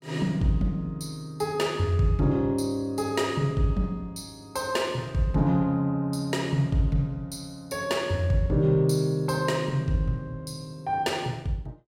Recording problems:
none

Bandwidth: 16 kHz